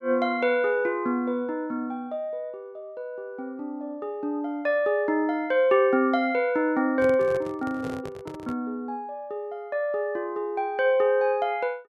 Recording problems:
handling noise; from 7 to 8.5 s; peak -7 dB vs average level

